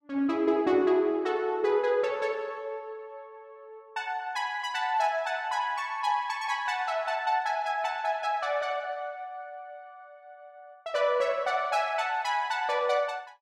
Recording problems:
none

